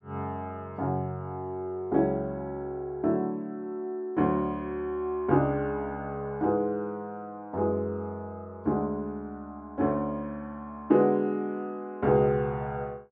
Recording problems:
none

